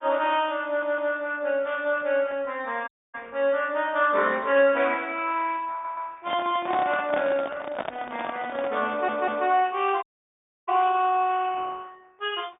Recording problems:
treble missing; nothing above 3.2 kHz
lossy codec; Opus, log-spectral distance 3 dB
stutter; at 0.5 s, at 5.5 s and at 9 s
dropout; at 3 s and at 10 s for 0.5 s
handling noise; from 6 to 9 s; peak 0 dB vs average level

